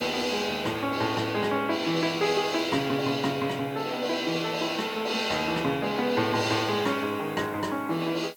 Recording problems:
background hiss; slope 0 dB per octave, SNR 25 dB

